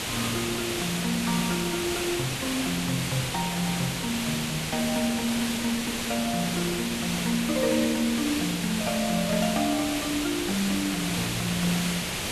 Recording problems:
hiss; slope -2 dB per octave, SNR 1 dB

